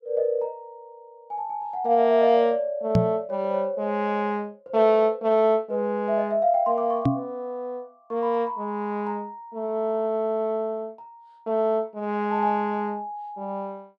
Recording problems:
microphone thump; at 3 s and at 7 s; peak +7 dB vs average level

